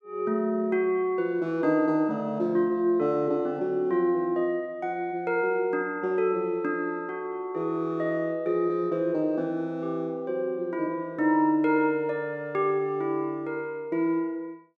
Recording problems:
none

